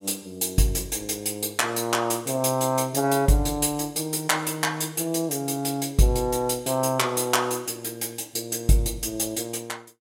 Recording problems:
none

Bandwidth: 16 kHz